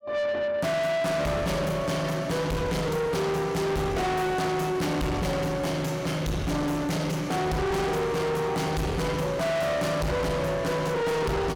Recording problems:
distorted audio; soft clipping, signal-to-distortion ratio 6 dB

